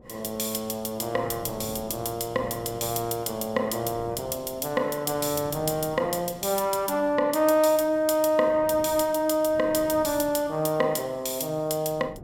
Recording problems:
wind noise; below 420 Hz, SNR 20 dB

